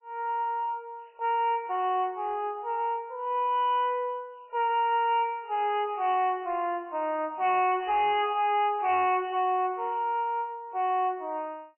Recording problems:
lossy codec; MP3, log-spectral distance 2 dB, nothing above 2.6 kHz
distorted audio; soft clipping, signal-to-distortion ratio 11 dB

